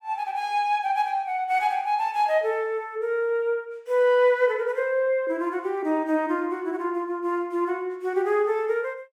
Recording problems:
none

